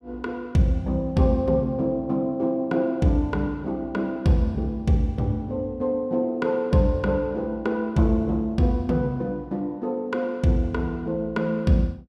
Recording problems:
none

